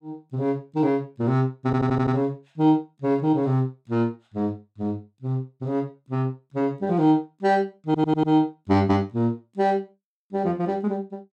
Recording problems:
audio stuttering; at 1.5 s and at 8 s

